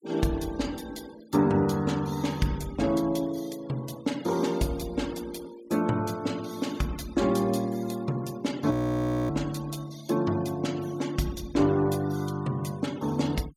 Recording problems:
noise reduction artefacts; signal-to-artefact ratio 20 dB
audio freezing; at 8.5 s for 0.5 s

